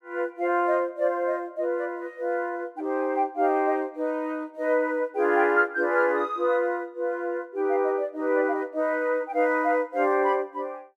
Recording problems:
none

